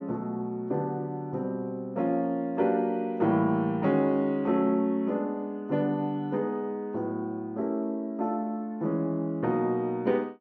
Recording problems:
treble missing; nothing above 6.3 kHz

